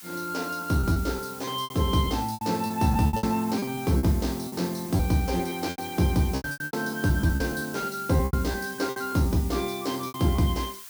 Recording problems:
background hiss; slope +3 dB per octave, SNR 14 dB
packet loss; 14% of the sound replaced, filled with repeated pitch periods

